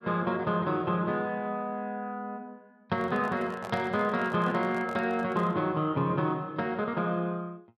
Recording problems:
handling noise; from 3 to 5.5 s; peak -6 dB vs average level

